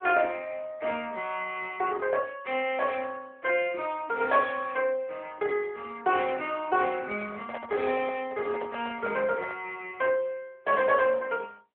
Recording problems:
telephone audio; 280 Hz to 3.6 kHz, AMR-NB
handling noise; from 7 to 9.5 s; peak -5 dB vs average level

